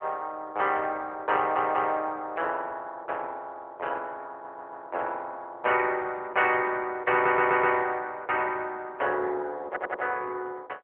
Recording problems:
telephone audio; 320 Hz to 3.2 kHz, AMR-NB
audio stuttering; 4 times, first at 1.5 s

